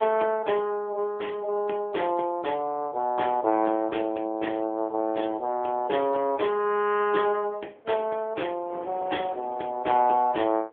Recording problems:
phone line; 280 Hz to 3.4 kHz, AMR-NB
wind on the microphone; below 880 Hz, SNR 24 dB

